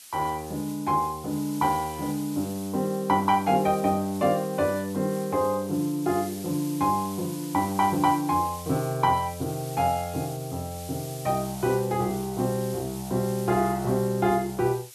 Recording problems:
background hiss; slope +3 dB per octave, SNR 15 dB

